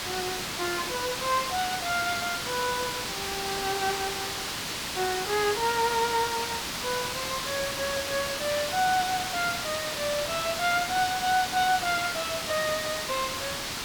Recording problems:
background hiss; slope 0 dB per octave, SNR 2 dB

